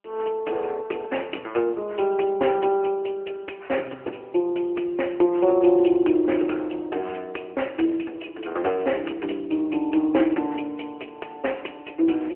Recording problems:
telephone audio; 280 Hz to 3.3 kHz, AMR-NB

